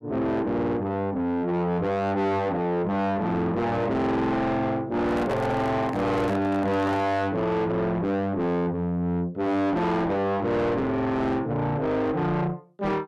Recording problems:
distorted audio; soft clipping, signal-to-distortion ratio 6 dB
handling noise; from 5 to 7 s; peak +2 dB vs average level

